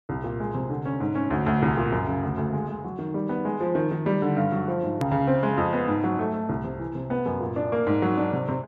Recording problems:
click at an edit; at 5 s

